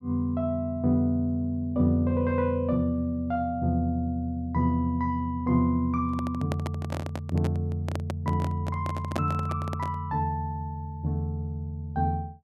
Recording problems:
microphone handling noise; from 6 to 10 s; peak +1 dB vs average level

